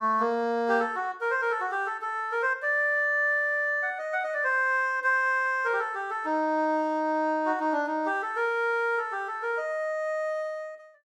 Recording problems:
none

